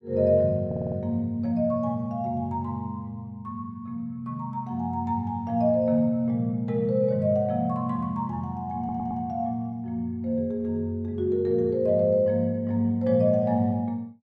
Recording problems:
audio stuttering; at 0.5 s and at 9 s

